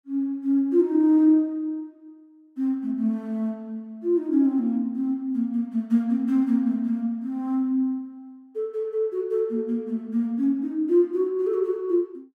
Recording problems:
none

